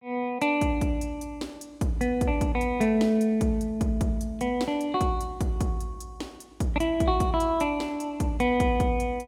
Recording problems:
none

